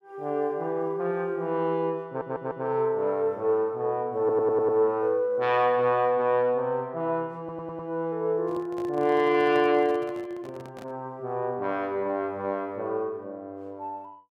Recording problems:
stutter; at 2 s, at 4 s and at 7.5 s
handling noise; from 8.5 to 11 s; peak -11 dB vs average level

